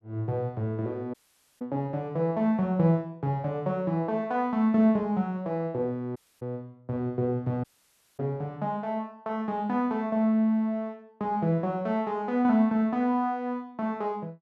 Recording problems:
dropout; at 1 s, at 6 s and at 7.5 s for 0.5 s

